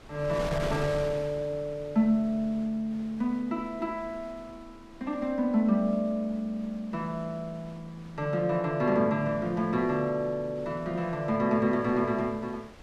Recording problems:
wind on the microphone; below 1.3 kHz, SNR 17 dB

